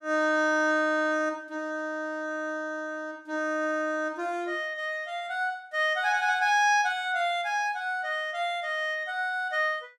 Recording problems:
none

